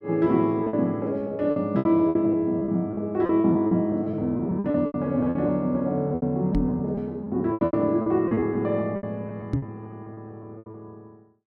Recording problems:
packet loss; 15% of the sound replaced, filled with repeated pitch periods
microphone bump; at 6.5 s and at 9.5 s; peak +3 dB vs average level

